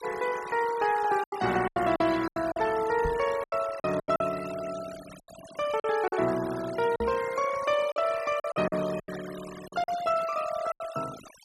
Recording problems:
noise reduction artefacts; signal-to-artefact ratio 15 dB
lost packets; 10% of the sound replaced, filled with silence
microphone bump; at 3 s and at 7 s; peak -2 dB vs average level

